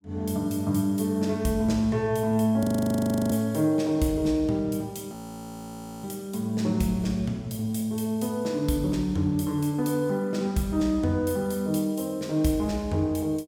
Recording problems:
audio freezing; at 2.5 s for 0.5 s and at 5 s for 1 s

